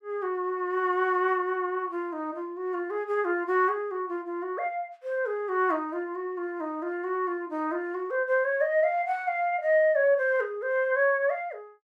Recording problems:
none

